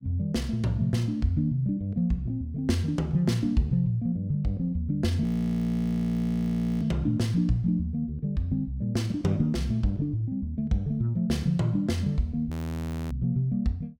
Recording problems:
audio freezing; at 5 s for 1.5 s and at 13 s for 0.5 s

